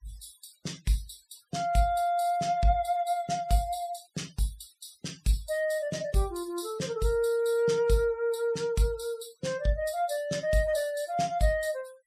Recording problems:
noise reduction artefacts; signal-to-artefact ratio 23 dB

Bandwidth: 15 kHz